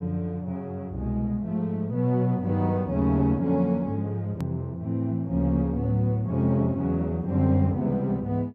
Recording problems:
hard cut with a click; at 4.5 s

